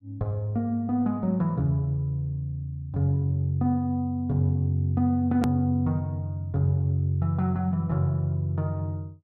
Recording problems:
hard cut with a click; at 5.5 s

